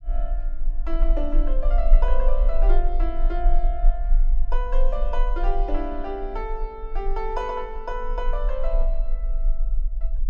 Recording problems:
low-frequency rumble; below 34 Hz, strongest tone 22 Hz, SNR -5 dB

